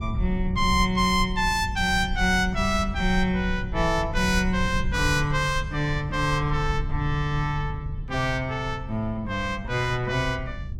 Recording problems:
rumble; below 90 Hz, SNR 8 dB

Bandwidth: 16 kHz